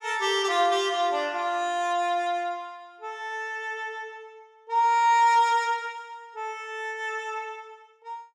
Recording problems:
none

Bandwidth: 14.5 kHz